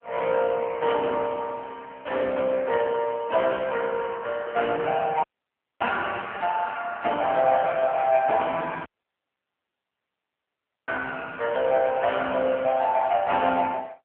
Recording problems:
phone line; 300 Hz to 3.3 kHz, AMR-NB
audio cutting out; at 5 s for 0.5 s and at 9 s for 2 s

